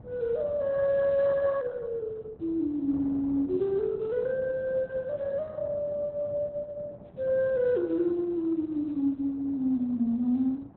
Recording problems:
lossy codec; Opus, log-spectral distance 2 dB, nothing above 4 kHz
wind on the microphone; below 340 Hz, SNR 20 dB

